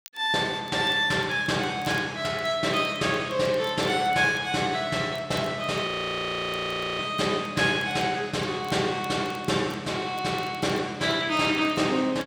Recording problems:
crackle; vinyl, SNR 27 dB
audio freezing; at 6 s for 1 s

